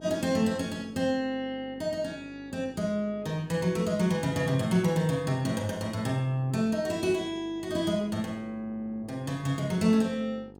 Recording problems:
hum; 50 Hz, harmonics up to 1.3 kHz, SNR 21 dB

